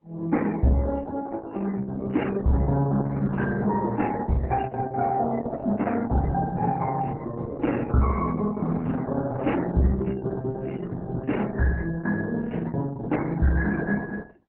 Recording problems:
lossy codec; MP3, then Opus, log-spectral distance 3 dB
distorted audio; soft clipping, signal-to-distortion ratio 12 dB

